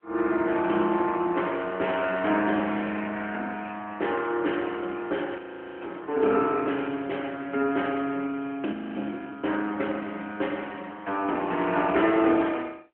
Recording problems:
phone line; 240 Hz to 3.2 kHz, AMR-NB
frozen audio; at 5.5 s and at 8.5 s

